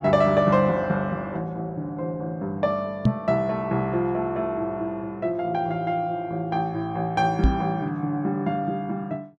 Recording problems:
knock on the microphone; at 3 s and at 7.5 s; peak +9 dB vs average level

